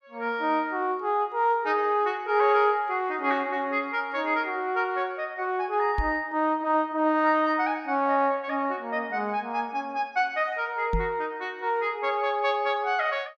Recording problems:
microphone bump; at 6 s and at 11 s; peak +1 dB vs average level

